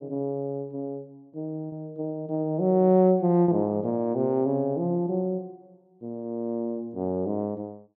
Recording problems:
packet loss; 1.1% of the sound replaced, filled with repeated pitch periods

